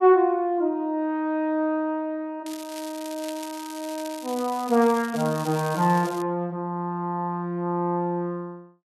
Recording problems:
crackle; from 2.5 to 6 s; loose cable, SNR 15 dB

